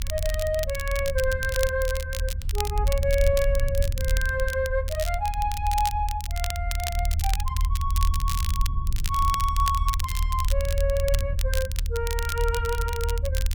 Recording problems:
rumble; below 78 Hz, strongest tone 38 Hz, SNR 0 dB
crackling; vinyl, SNR 8 dB

